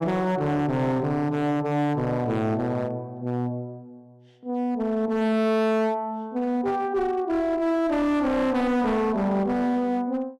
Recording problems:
distorted audio; hard clipping, signal-to-distortion ratio 8 dB

